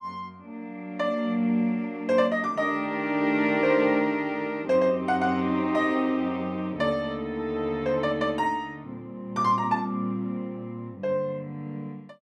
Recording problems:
none

